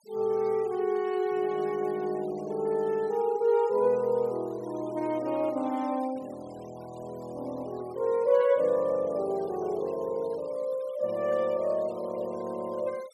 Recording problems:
denoising artefacts; signal-to-artefact ratio 25 dB

